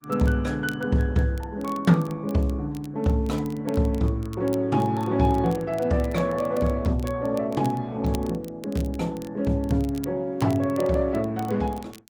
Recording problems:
lossy compression; Opus, log-spectral distance 2 dB
crackle; vinyl, SNR 23 dB

